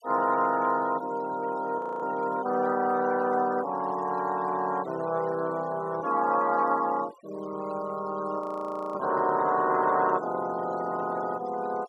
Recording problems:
noise reduction artefacts; signal-to-artefact ratio 20 dB
audio freezing; at 2 s and at 8.5 s for 0.5 s

